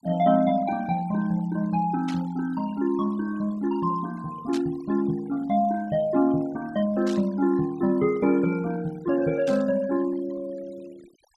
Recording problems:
denoising artefacts; signal-to-artefact ratio 22 dB
static burst; 4 times, first at 2 s; peak -9 dB vs average level

